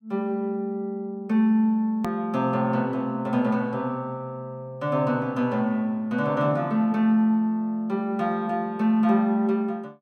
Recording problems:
click at an edit; at 2 s

